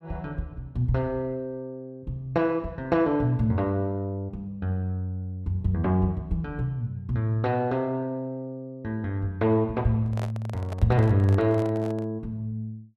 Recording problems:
microphone handling noise; from 10 to 12 s; peak -6 dB vs average level

